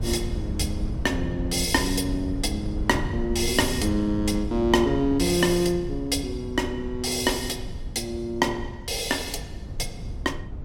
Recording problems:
low-frequency rumble; below 130 Hz, SNR 8 dB

